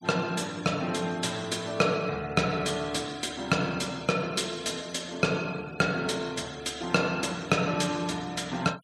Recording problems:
denoising artefacts; signal-to-artefact ratio 21 dB

